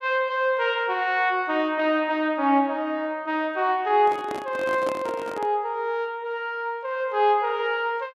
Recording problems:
microphone handling noise; from 4 to 5.5 s; peak -3 dB vs average level

